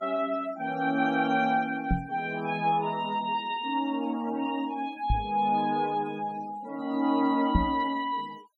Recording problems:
denoising artefacts; signal-to-artefact ratio 21 dB
microphone bump; at 2 s, at 5 s and at 7.5 s; peak +7 dB vs average level

